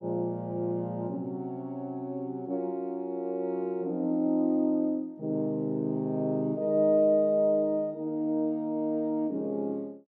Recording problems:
none

